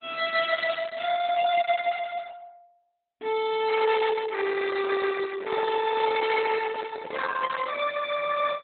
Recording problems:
lossy codec; Opus, log-spectral distance 5 dB, nothing above 4 kHz
handling noise; from 4.5 to 7.5 s; peak -9 dB vs average level

